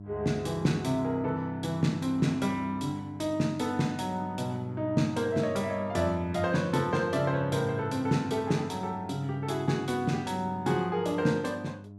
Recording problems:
hum; 50 Hz, harmonics up to 700 Hz, SNR 14 dB

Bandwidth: 14.5 kHz